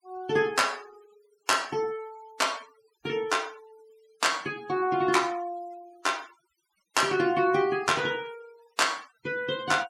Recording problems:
noise reduction artefacts; signal-to-artefact ratio 22 dB

